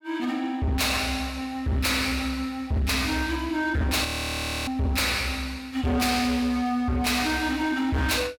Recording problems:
distortion; hard clipping, signal-to-distortion ratio 7 dB
frozen audio; at 4 s for 0.5 s

